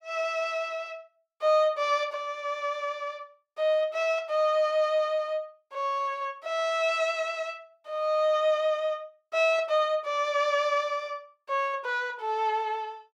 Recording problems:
none

